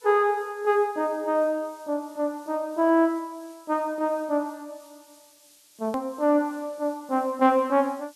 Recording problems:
background hiss; SNR 28 dB
edit click; at 6 s

